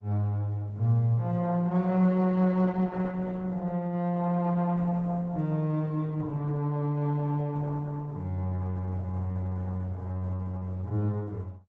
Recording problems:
lossy codec; Opus, log-spectral distance 2 dB

